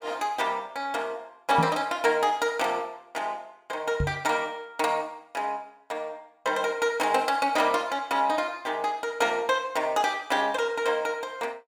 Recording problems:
microphone bump; at 1.5 s and at 4 s; peak +3 dB vs average level

